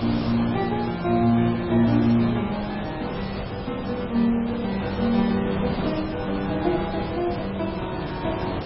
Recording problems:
lossy codec; MP3, log-spectral distance 10 dB, nothing above 5.2 kHz
background hiss; slope -6 dB per octave, SNR 8 dB

